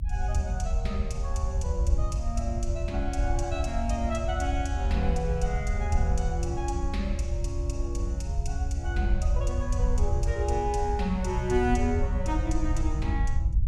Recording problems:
rumble; below 72 Hz, SNR -2 dB

